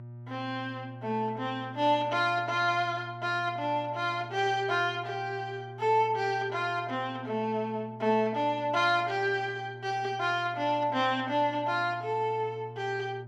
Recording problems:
hum; 60 Hz, harmonics up to 600 Hz, SNR 16 dB

